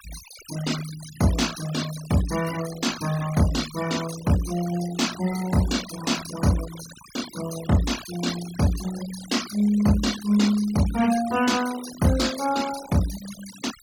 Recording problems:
denoising artefacts; signal-to-artefact ratio 11 dB

